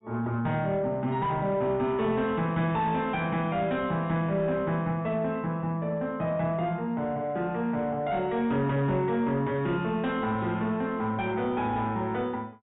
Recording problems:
low-pass filter; nothing above 4 kHz
distortion; soft clipping, signal-to-distortion ratio 11 dB

